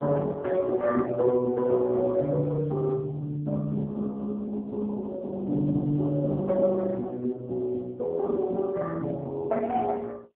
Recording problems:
telephone audio; 110 Hz to 2.2 kHz, AMR-NB

